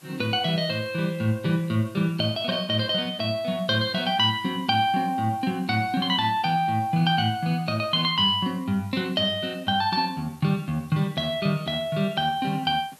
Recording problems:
background hiss; SNR 27 dB

